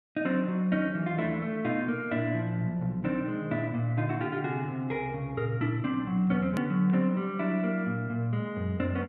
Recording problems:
click at an edit; at 6.5 s

